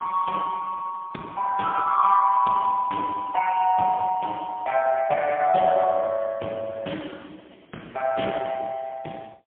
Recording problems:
phone line; 240 Hz to 2.8 kHz, AMR-NB, then MP3

